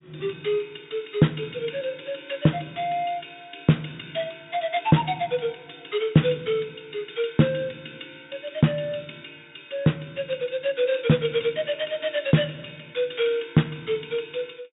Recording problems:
treble cut off; nothing above 4 kHz

